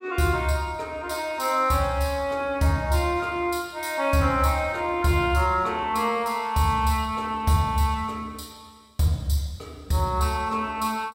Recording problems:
none

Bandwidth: 16 kHz